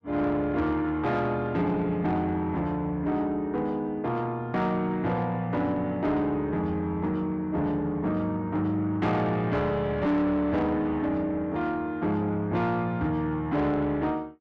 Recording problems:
distortion; soft clipping, signal-to-distortion ratio 12 dB

